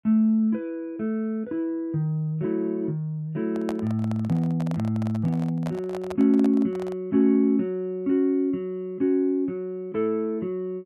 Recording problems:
handling noise; from 3.5 to 7 s; peak -4 dB vs average level

